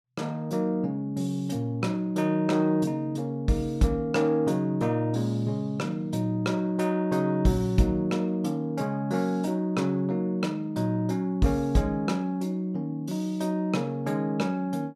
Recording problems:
none

